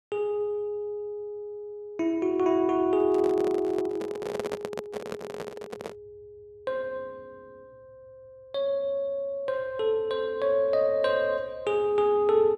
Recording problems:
handling noise; from 3 to 6 s; peak -2 dB vs average level

